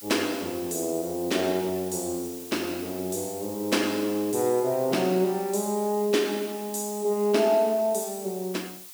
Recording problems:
background hiss; slope +3 dB per octave, SNR 14 dB

